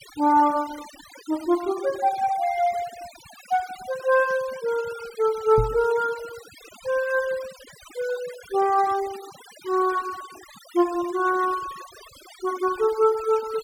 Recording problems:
denoising artefacts; signal-to-artefact ratio 19 dB
microphone thump; at 5.5 s; peak +2 dB vs average level

